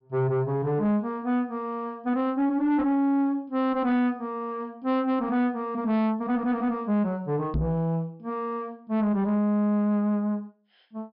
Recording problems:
low-pass filter; nothing above 5.5 kHz
distortion; soft clipping, signal-to-distortion ratio 12 dB
microphone thump; at 7.5 s; peak +3 dB vs average level

